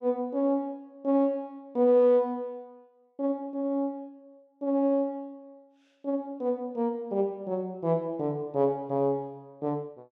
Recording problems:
none

